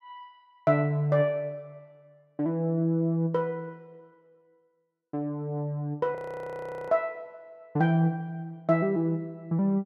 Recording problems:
audio freezing; at 6 s for 0.5 s

